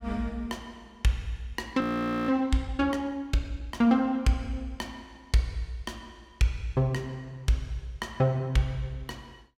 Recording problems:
frozen audio; at 2 s

